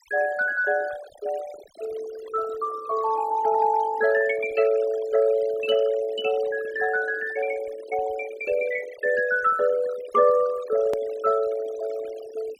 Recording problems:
noise reduction artefacts; signal-to-artefact ratio 17 dB
click at an edit; at 11 s

